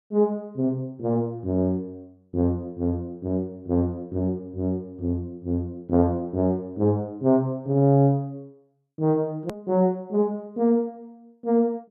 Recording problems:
edit click; at 9.5 s

